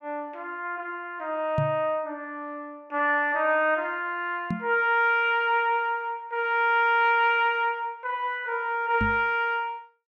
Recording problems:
microphone thump; at 1.5 s, at 4.5 s and at 9 s; peak +1 dB vs average level

